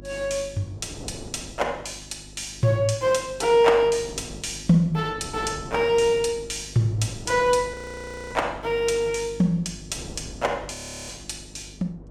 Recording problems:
hum; 50 Hz, harmonics up to 350 Hz, SNR 20 dB
wind on the microphone; below 450 Hz, SNR 20 dB
frozen audio; at 7.5 s for 0.5 s and at 11 s

